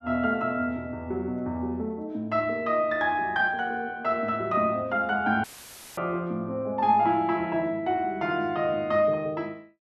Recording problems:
audio cutting out; at 5.5 s for 0.5 s; filled with static

